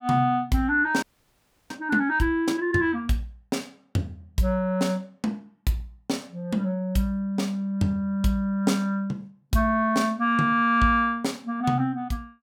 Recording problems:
frozen audio; at 1 s for 0.5 s

